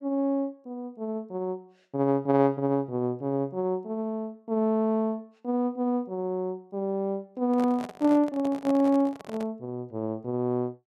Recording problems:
microphone handling noise; from 7.5 to 9.5 s; peak -7 dB vs average level

